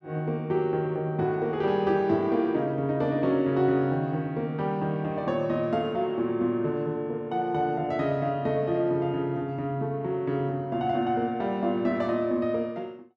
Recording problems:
none

